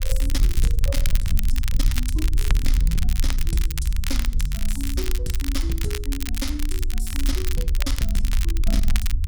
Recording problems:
distorted audio; soft clipping, signal-to-distortion ratio 11 dB
rumble; below 56 Hz, SNR -6 dB
crackling; vinyl, SNR 3 dB

